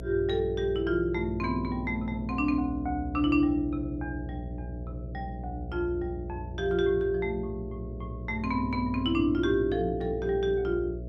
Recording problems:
electrical hum; 60 Hz, harmonics up to 660 Hz, SNR 10 dB

